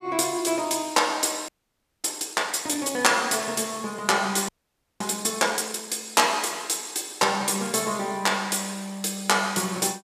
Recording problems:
frozen audio; at 1.5 s for 0.5 s and at 4.5 s for 0.5 s

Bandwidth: 14.5 kHz